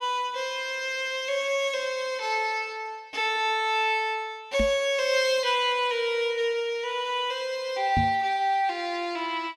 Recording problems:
microphone thump; at 4.5 s and at 8 s; peak +2 dB vs average level

